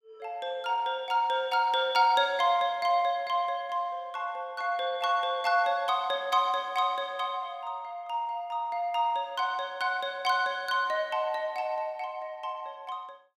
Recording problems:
none

